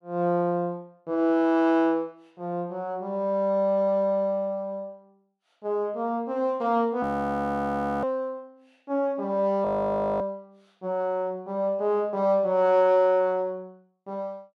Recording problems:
audio freezing; at 7 s for 1 s and at 9.5 s for 0.5 s

